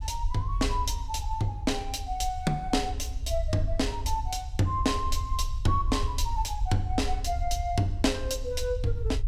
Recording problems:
rumble; below 66 Hz, SNR 4 dB

